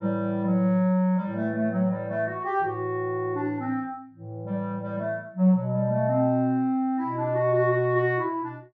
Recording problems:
none

